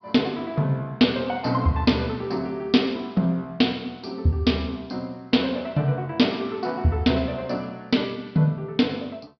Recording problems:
treble cut off; nothing above 5.5 kHz

